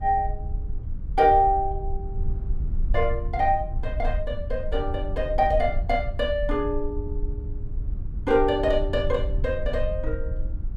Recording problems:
rumble; below 60 Hz, SNR 6 dB

